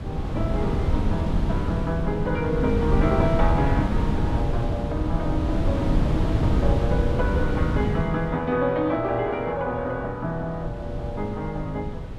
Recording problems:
wind noise; below 170 Hz, SNR -1 dB

